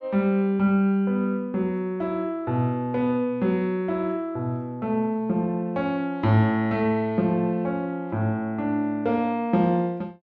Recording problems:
none

